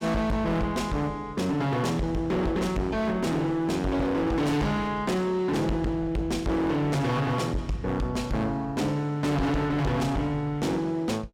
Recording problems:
distorted audio; hard clipping, signal-to-distortion ratio 7 dB

